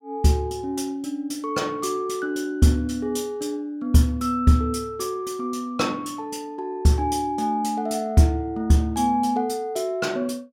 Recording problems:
none

